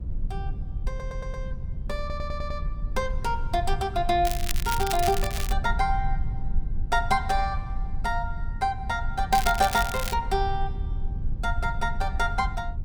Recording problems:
rumble; below 62 Hz, SNR 5 dB
stutter; at 1 s and at 2 s
crackle; from 4.5 to 5.5 s and at 9.5 s; loose cable, SNR 6 dB

